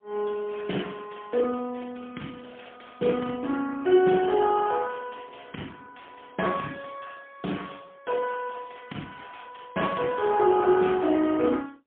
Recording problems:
phone line; 190 Hz to 3.4 kHz, AMR-NB, then MP3

